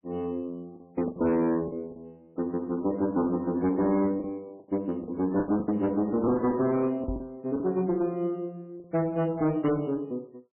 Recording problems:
codec artefacts; MP3, log-spectral distance 2 dB, nothing above 2.4 kHz
distortion; hard clipping, signal-to-distortion ratio 11 dB
packet loss; 7% of the sound replaced, filled with the last packet
microphone thump; at 7 s; peak -3 dB vs average level

